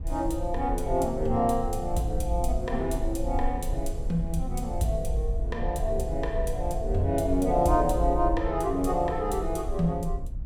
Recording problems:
low-frequency rumble; below 58 Hz, SNR 6 dB

